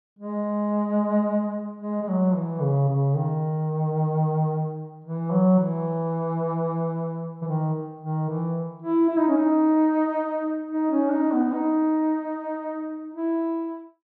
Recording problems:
none

